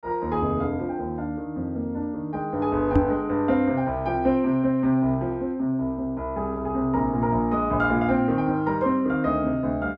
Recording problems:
microphone bump; at 3 s; peak +7 dB vs average level

